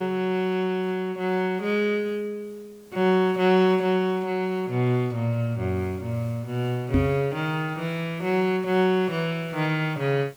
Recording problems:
hiss; slope -4 dB per octave, SNR 29 dB
microphone bump; at 7 s; peak +6 dB vs average level

